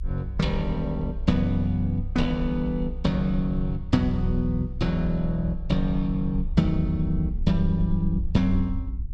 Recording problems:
low-frequency rumble; below 58 Hz, strongest tone 28 Hz, SNR 8 dB

